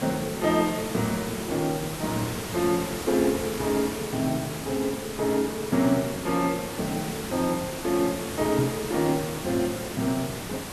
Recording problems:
hiss; slope -4 dB per octave, SNR 7 dB
microphone bump; at 8.5 s; peak +3 dB vs average level

